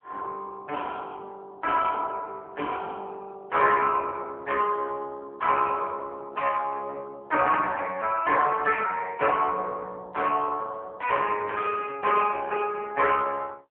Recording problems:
telephone audio; 320 Hz to 3.1 kHz, AMR-NB

